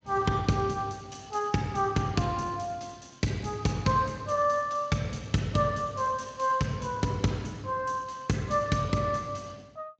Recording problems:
lossy compression; Speex, log-spectral distance 5 dB

